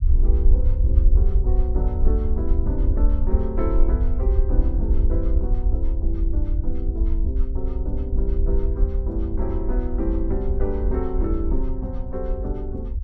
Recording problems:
low-frequency rumble; below 60 Hz, SNR -7 dB

